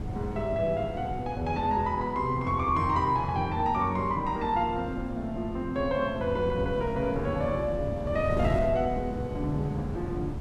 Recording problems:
wind on the microphone; below 240 Hz, SNR 8 dB

